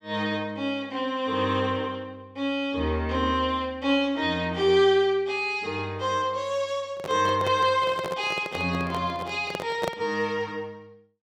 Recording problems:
handling noise; from 7 to 10 s; peak 0 dB vs average level

